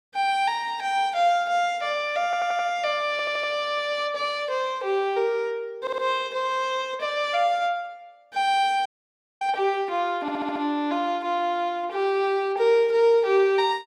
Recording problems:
stutter; 4 times, first at 2.5 s
audio cutting out; at 9 s for 0.5 s

